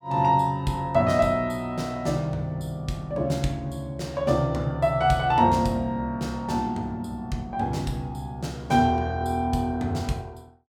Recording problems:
none

